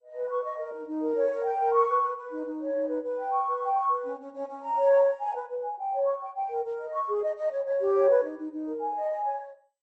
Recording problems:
lossy codec; MP2, log-spectral distance 2 dB

